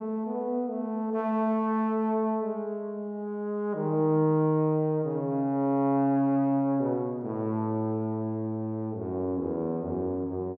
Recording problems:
none

